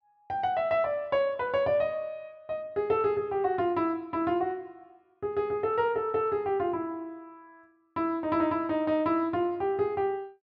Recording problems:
none

